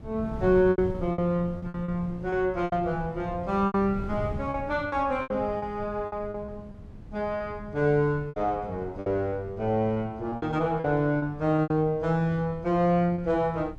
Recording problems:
wind on the microphone; below 170 Hz, SNR 15 dB
packet loss; 10% of the sound replaced, filled with repeated pitch periods

